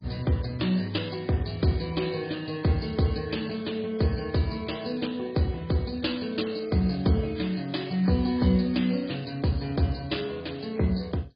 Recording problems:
lossy codec; MP3, then MP2, log-spectral distance 7 dB, nothing above 4.9 kHz

